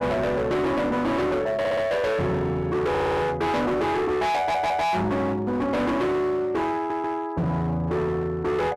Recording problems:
distorted audio; hard clipping, signal-to-distortion ratio 6 dB
audio stuttering; 4 times, first at 1.5 s

